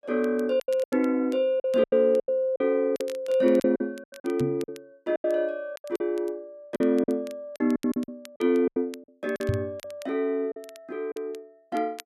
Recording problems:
crackling; vinyl, SNR 25 dB
lost packets; 13% of the sound replaced, filled with silence
knock on the microphone; at 4.5 s and at 9.5 s; peak +4 dB vs average level

